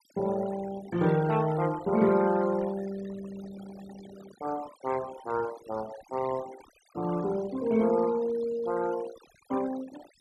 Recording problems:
noise reduction artefacts; signal-to-artefact ratio 17 dB

